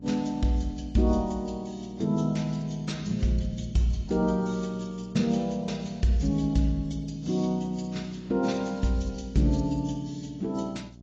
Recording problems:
lossy compression; AAC, log-spectral distance 3 dB, nothing above 7.3 kHz
hum; 60 Hz, harmonics up to 720 Hz, SNR 21 dB

